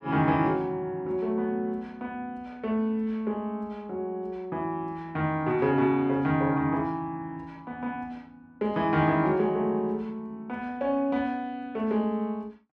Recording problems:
none

